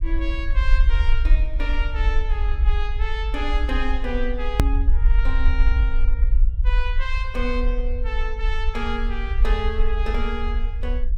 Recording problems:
low-frequency rumble; below 50 Hz, SNR -6 dB
edit click; at 4.5 s

